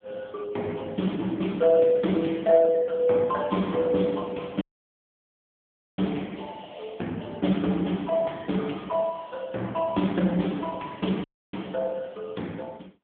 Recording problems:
telephone audio; 130 Hz to 3.5 kHz, AMR-NB
audio cutting out; at 4.5 s for 1.5 s and at 11 s

